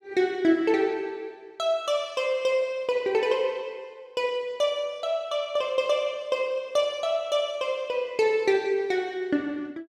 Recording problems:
none

